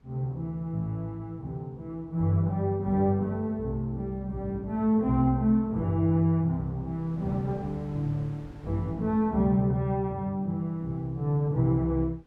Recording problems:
wind on the microphone; below 290 Hz, SNR 26 dB

